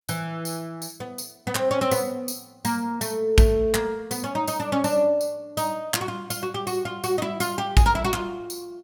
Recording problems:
none

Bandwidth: 17.5 kHz